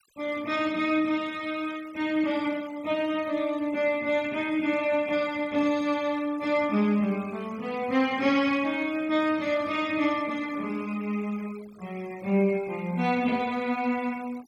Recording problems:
noise reduction artefacts; signal-to-artefact ratio 22 dB

